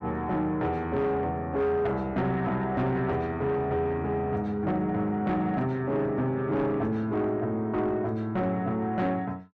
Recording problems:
distortion; soft clipping, signal-to-distortion ratio 11 dB

